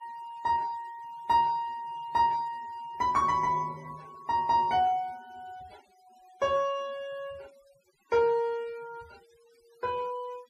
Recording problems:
noise reduction artefacts; signal-to-artefact ratio 27 dB

